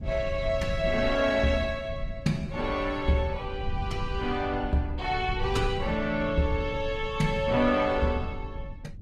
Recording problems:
lossy codec; Opus, log-spectral distance 2 dB, nothing above 18.3 kHz
low-frequency rumble; below 100 Hz, SNR 10 dB

